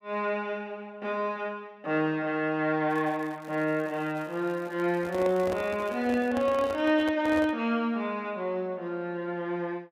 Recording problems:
crackling; from 3 to 6.5 s; loose cable, SNR 27 dB
microphone handling noise; from 5 to 7.5 s; peak -4 dB vs average level

